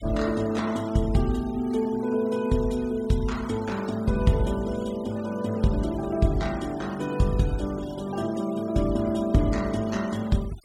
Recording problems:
noise reduction artefacts; signal-to-artefact ratio 21 dB

